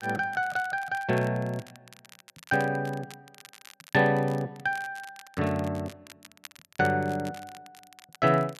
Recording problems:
crackling; vinyl, SNR 21 dB

